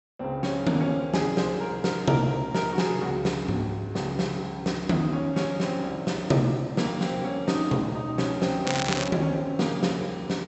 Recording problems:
treble missing; nothing above 7.9 kHz
crackle; at 8.5 s; loose cable, SNR 5 dB

